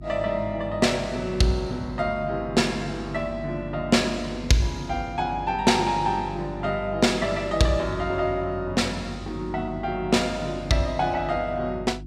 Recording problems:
electrical hum; 50 Hz, harmonics up to 350 Hz, SNR 14 dB

